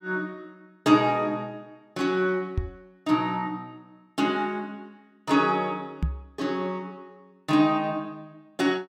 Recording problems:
knock on the microphone; at 2.5 s and at 6 s; peak +3 dB vs average level

